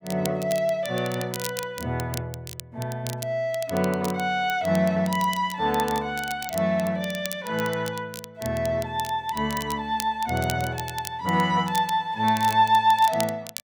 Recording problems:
crackling; vinyl, SNR 13 dB

